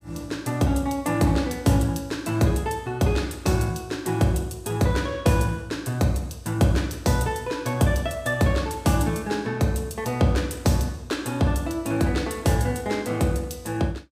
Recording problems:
none

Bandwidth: 15.5 kHz